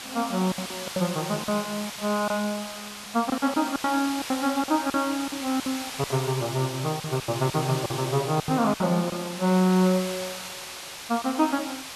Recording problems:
hiss; SNR 9 dB
lost packets; 11% of the sound replaced, filled with silence

